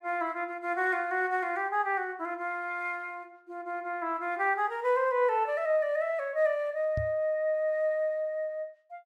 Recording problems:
knock on the microphone; at 7 s; peak -1 dB vs average level

